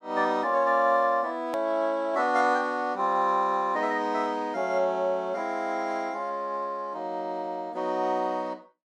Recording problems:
hard cut with a click; at 1.5 s

